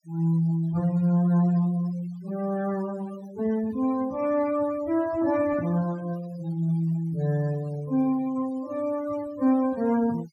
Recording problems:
denoising artefacts; signal-to-artefact ratio 21 dB

